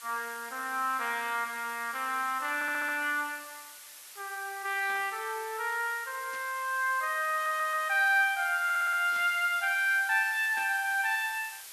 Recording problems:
background hiss; SNR 16 dB
audio stuttering; at 2.5 s, at 7.5 s and at 8.5 s
static burst; 4 times, first at 5 s; peak -14 dB vs average level

